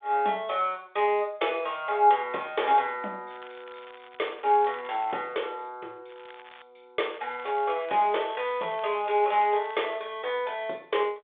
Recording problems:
phone line; 300 Hz to 3.6 kHz, G.726
crackle; from 3.5 to 5 s, at 6 s and from 7 to 10 s; loose cable, SNR 23 dB

